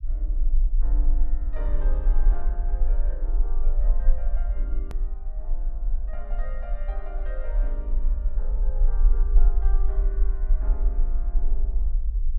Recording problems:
low-frequency rumble; below 40 Hz, strongest tone 22 Hz, SNR -17 dB
hard cut with a click; at 5 s

